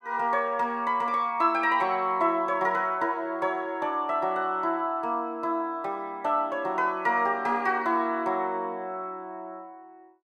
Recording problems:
none

